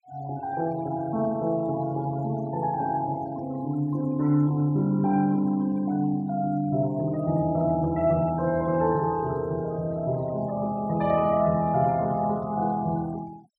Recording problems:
denoising artefacts; signal-to-artefact ratio 25 dB

